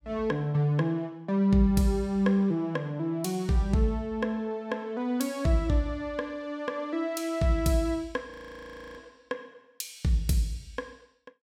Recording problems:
audio freezing; at 8.5 s for 0.5 s

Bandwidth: 16.5 kHz